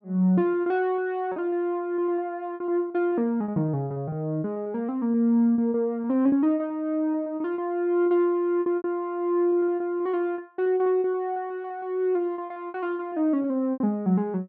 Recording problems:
lost packets; 12% of the sound replaced, filled with repeated pitch periods

